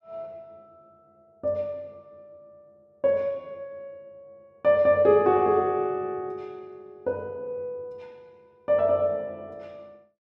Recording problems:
none

